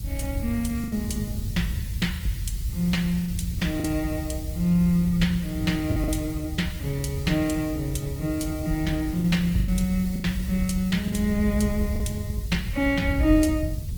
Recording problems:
lossy codec; Opus, log-spectral distance 3 dB, nothing above 19 kHz
hiss; slope +3 dB per octave, SNR 17 dB
low-frequency rumble; below 100 Hz, SNR 6 dB
packet loss; 4% of the sound replaced, filled with the last packet

